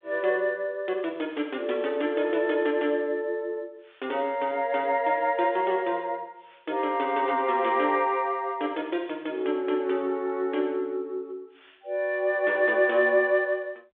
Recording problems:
telephone audio; 280 Hz to 3.6 kHz, G.726

